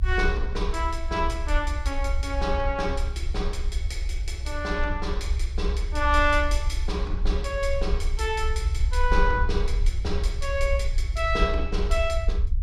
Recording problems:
rumble; below 62 Hz, SNR 0 dB

